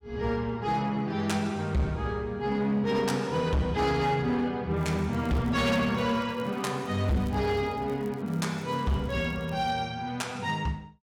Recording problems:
distortion; hard clipping, signal-to-distortion ratio 11 dB
crackle; from 5 to 9.5 s; loose cable, SNR 29 dB

